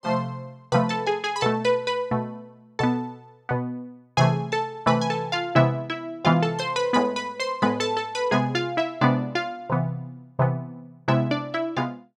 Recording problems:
none

